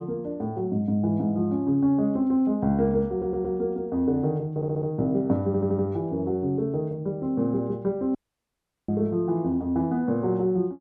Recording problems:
audio stuttering; at 3 s, at 4.5 s and at 5.5 s
audio cutting out; at 8 s for 0.5 s

